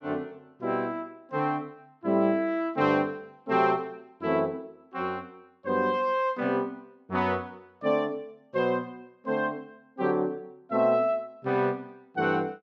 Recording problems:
none

